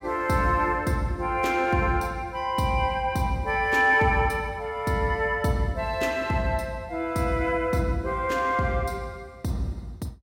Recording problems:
none

